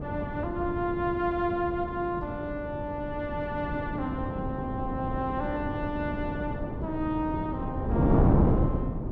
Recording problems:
wind noise; below 330 Hz, SNR -1 dB

